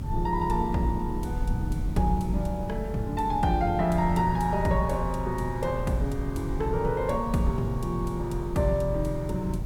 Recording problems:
hiss; slope -7 dB per octave, SNR 18 dB
rumble; below 110 Hz, SNR 6 dB

